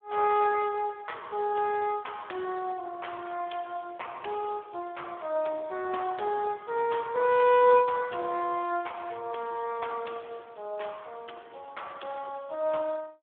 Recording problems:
telephone audio; 300 Hz to 3.5 kHz, Speex

